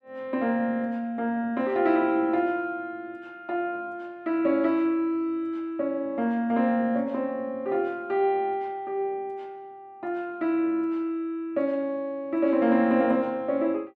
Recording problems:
none

